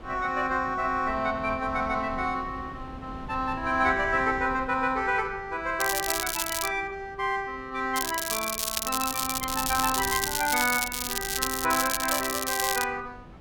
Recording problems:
wind on the microphone; below 340 Hz, SNR 17 dB
crackle; at 6 s and from 8 to 13 s; loose cable, SNR 2 dB

